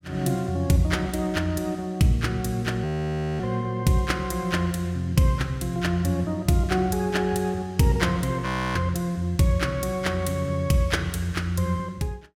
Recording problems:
audio freezing; at 3 s for 0.5 s and at 8.5 s

